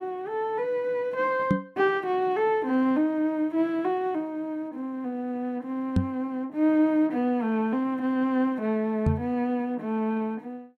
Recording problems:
knock on the microphone; at 1.5 s, at 6 s and at 9 s; peak +6 dB vs average level

